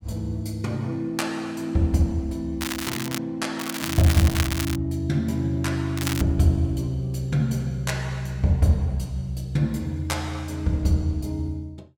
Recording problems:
crackling; at 2.5 s, from 3.5 to 5 s and at 6 s; loose cable, SNR 6 dB

